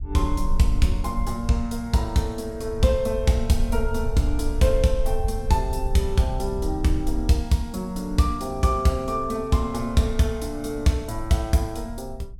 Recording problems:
low-frequency rumble; below 58 Hz, SNR 8 dB

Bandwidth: 17.5 kHz